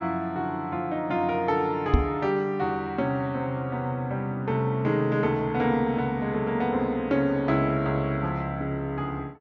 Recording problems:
treble cut off; nothing above 6.8 kHz
microphone bump; at 2 s; peak +9 dB vs average level

